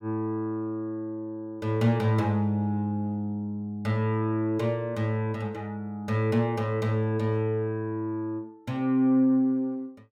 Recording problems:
none

